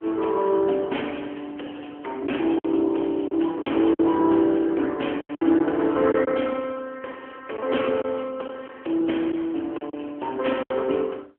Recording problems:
telephone audio; 240 Hz to 3.2 kHz, AMR-NB
lost packets; 5% of the sound replaced, filled with silence

